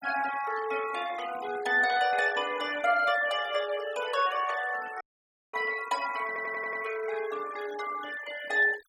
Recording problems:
denoising artefacts; signal-to-artefact ratio 15 dB
dropout; at 5 s for 0.5 s
audio stuttering; at 6.5 s

